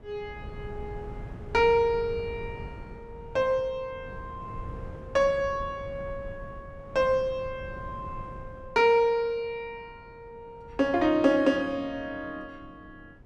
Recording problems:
wind noise; below 190 Hz, SNR 17 dB

